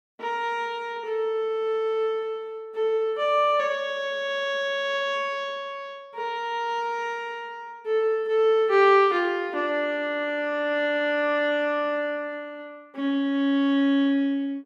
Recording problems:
none

